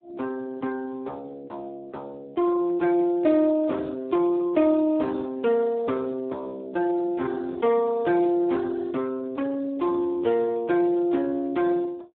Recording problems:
phone line; 240 Hz to 2.1 kHz, Speex

